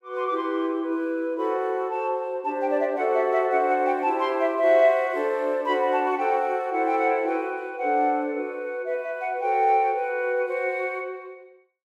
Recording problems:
none

